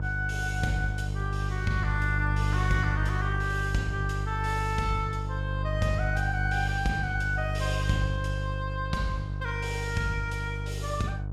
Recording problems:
hum; 50 Hz, harmonics up to 500 Hz, SNR 0 dB

